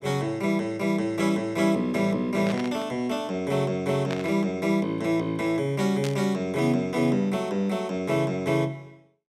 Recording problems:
burst of static; at 2.5 s, at 4 s and at 6 s; peak -5 dB vs average level

